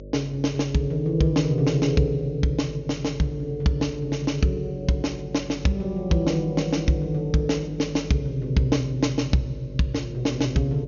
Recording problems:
treble cut off; nothing above 6.7 kHz
hum; 50 Hz, harmonics up to 600 Hz, SNR 16 dB

